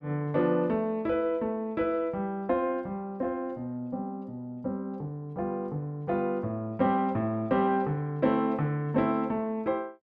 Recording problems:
none

